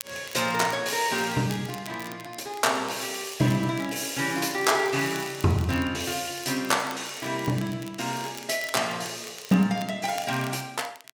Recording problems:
crackling; vinyl, SNR 18 dB

